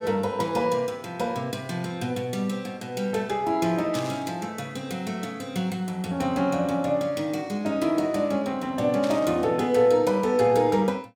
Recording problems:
burst of static; at 4 s and at 9 s; peak -7 dB vs average level

